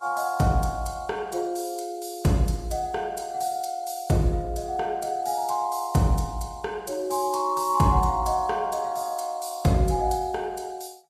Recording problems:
lossy codec; Vorbis, log-spectral distance 3 dB, nothing above 12.7 kHz

